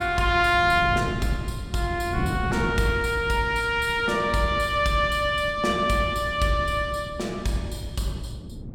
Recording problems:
wind on the microphone; below 220 Hz, SNR 12 dB

